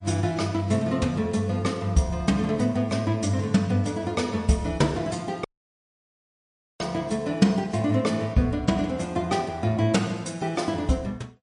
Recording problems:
lossy compression; MP3, log-spectral distance 2 dB, nothing above 8.2 kHz
dropout; at 5.5 s for 1.5 s

